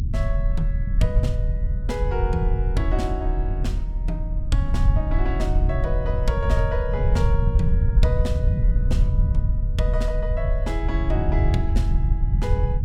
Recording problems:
rumble; below 84 Hz, strongest tone 38 Hz, SNR -6 dB

